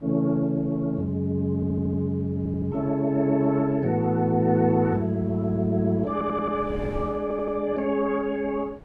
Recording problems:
wind noise; below 290 Hz, SNR 20 dB
audio stuttering; 4 times, first at 1.5 s

